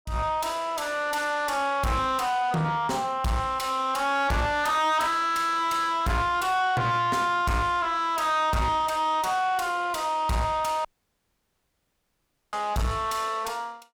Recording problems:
distortion; soft clipping, signal-to-distortion ratio 7 dB
audio cutting out; at 11 s for 1.5 s

